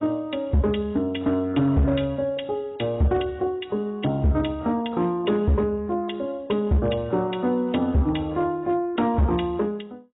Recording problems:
codec artefacts; AAC, log-spectral distance 3 dB, nothing above 3.8 kHz
distortion; hard clipping, signal-to-distortion ratio 6 dB

